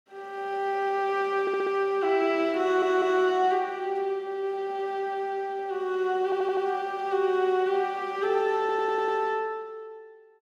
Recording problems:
stutter; 4 times, first at 1.5 s

